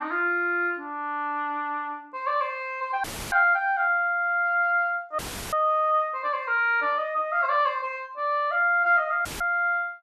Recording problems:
audio cutting out; at 3 s, at 5 s and at 9.5 s; filled with static

